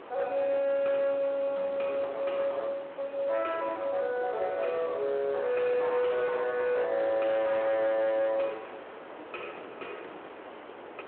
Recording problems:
telephone audio; 300 Hz to 3.7 kHz, Speex
distortion; hard clipping, signal-to-distortion ratio 11 dB
background hiss; SNR 16 dB

